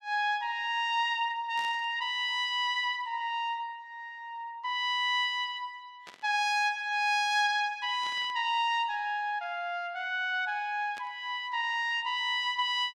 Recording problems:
burst of static; 4 times, first at 1.5 s; peak -13 dB vs average level

